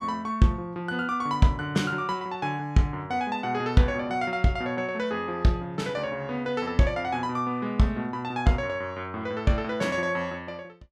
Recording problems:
none

